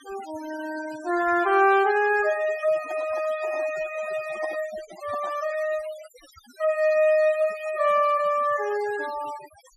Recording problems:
denoising artefacts; signal-to-artefact ratio 18 dB
handling noise; from 2.5 to 5.5 s; peak -8 dB vs average level

